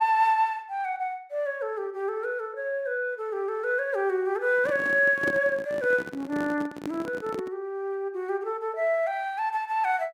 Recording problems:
handling noise; from 4.5 to 7.5 s; peak -1 dB vs average level

